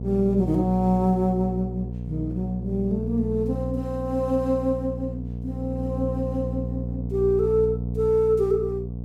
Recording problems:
electrical hum; 60 Hz, harmonics up to 540 Hz, SNR 6 dB

